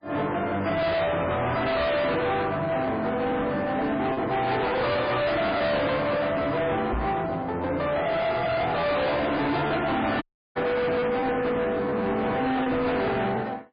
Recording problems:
lossy compression; MP3, log-spectral distance 3 dB, nothing above 4.8 kHz
distorted audio; hard clipping, signal-to-distortion ratio 6 dB
packet loss; 3% of the sound replaced, filled with repeated pitch periods
microphone bump; at 7 s; peak -1 dB vs average level
audio cutting out; at 10 s

